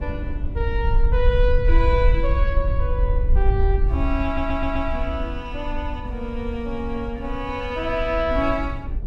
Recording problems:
rumble; below 110 Hz, SNR 12 dB
wind on the microphone; below 58 Hz, SNR -1 dB
stutter; at 4 s

